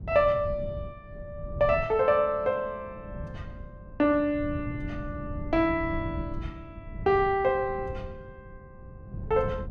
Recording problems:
wind noise; below 150 Hz, SNR 12 dB

